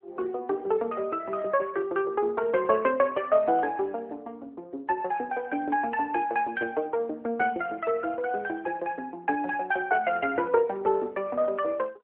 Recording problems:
telephone audio; 260 Hz to 3.3 kHz, AMR-NB

